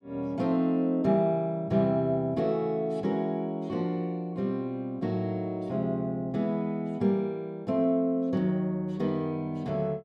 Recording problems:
none

